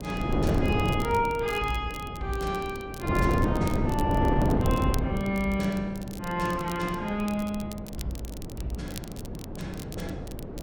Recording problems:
wind on the microphone; below 370 Hz, SNR 1 dB
crackling; vinyl, SNR 16 dB

